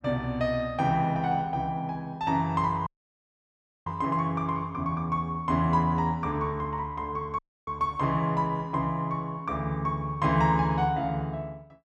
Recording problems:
dropout; at 3 s for 1 s and at 7.5 s

